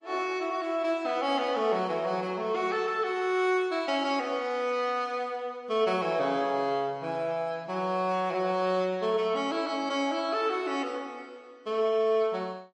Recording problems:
lossy codec; MP3, log-spectral distance 2 dB

